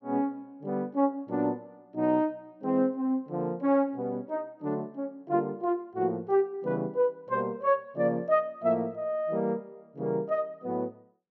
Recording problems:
none

